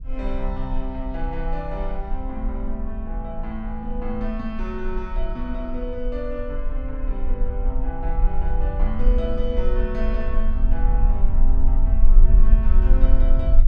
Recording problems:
rumble; below 40 Hz, strongest tone 18 Hz, SNR -6 dB

